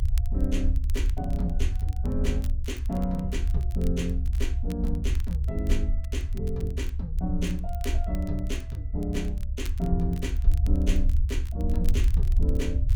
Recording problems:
low-frequency rumble; below 68 Hz, SNR -4 dB
crackling; vinyl, SNR 18 dB

